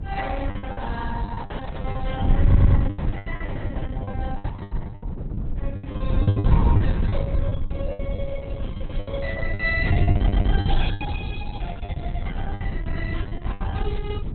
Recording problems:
lossy codec; Opus, log-spectral distance 3 dB, nothing above 4 kHz
wind noise; below 110 Hz, SNR -9 dB
packet loss; 15% of the sound replaced, filled with the last packet
stutter; at 2.5 s and at 10 s

